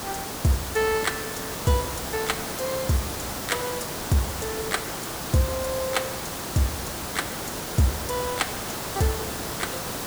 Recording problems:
hiss; slope -4 dB per octave, SNR 3 dB

